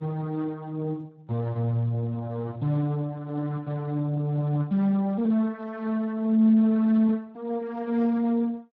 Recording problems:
lossy compression; Speex, log-spectral distance 2 dB

